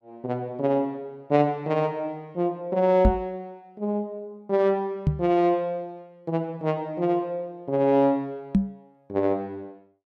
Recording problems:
microphone bump; at 3 s, at 5 s and at 8.5 s; peak +8 dB vs average level

